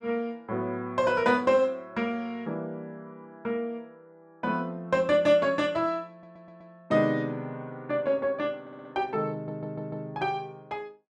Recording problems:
stutter; at 6 s, at 8.5 s and at 9.5 s

